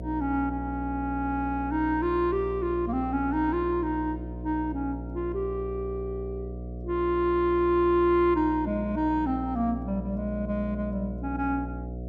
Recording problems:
hum; 60 Hz, harmonics up to 720 Hz, SNR 9 dB

